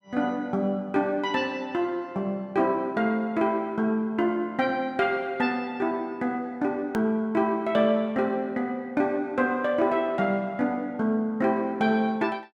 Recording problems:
hard cut with a click; at 7 s

